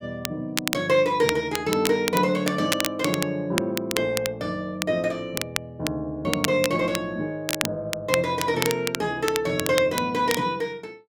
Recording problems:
crackling; vinyl, SNR 6 dB

